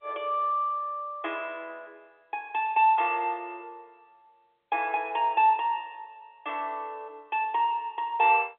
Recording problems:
telephone audio; 320 Hz to 3.6 kHz, G.711

